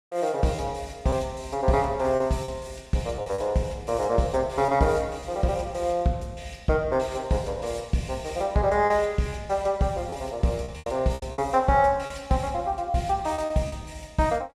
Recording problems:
packet loss; 5% of the sound replaced, filled with repeated pitch periods

